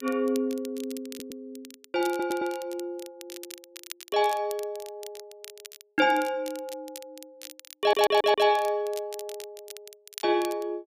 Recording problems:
crackle; vinyl, SNR 17 dB
stutter; at 1 s, at 2 s and at 8 s

